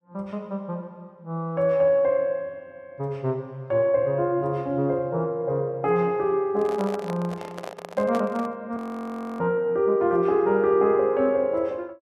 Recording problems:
microphone handling noise; from 6.5 to 8.5 s; peak -4 dB vs average level
audio freezing; at 9 s for 0.5 s

